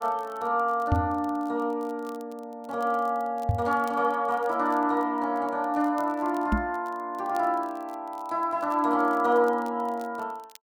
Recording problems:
crackling; vinyl, SNR 29 dB
microphone thump; at 1 s, at 3.5 s and at 6.5 s; peak +6 dB vs average level

